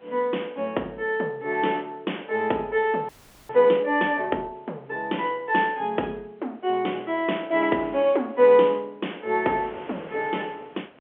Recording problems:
telephone audio; 260 Hz to 3.4 kHz, G.711
wind on the microphone; below 1.6 kHz, SNR 24 dB
audio freezing; at 3 s

